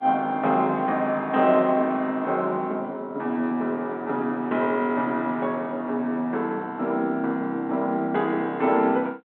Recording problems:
telephone audio; 190 Hz to 4 kHz, G.726

